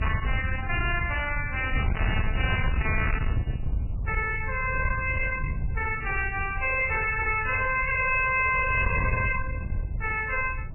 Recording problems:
lossy codec; MP3, log-spectral distance 6 dB, nothing above 2.6 kHz
distorted audio; soft clipping, signal-to-distortion ratio 7 dB
wind noise; below 120 Hz, SNR 5 dB

